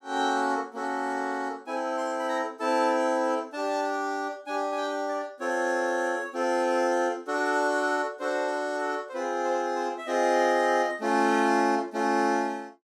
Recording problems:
none

